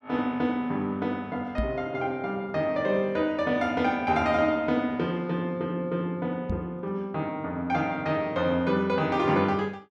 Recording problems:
microphone bump; at 1.5 s and at 6.5 s; peak +1 dB vs average level

